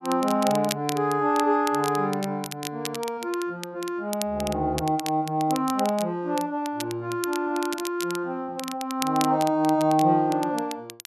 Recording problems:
crackling; vinyl, SNR 12 dB

